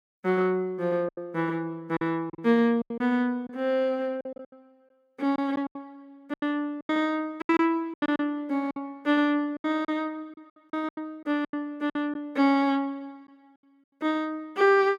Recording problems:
packet loss; 11% of the sound replaced, filled with silence

